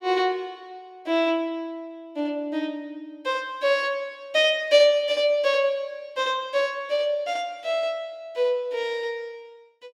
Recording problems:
none

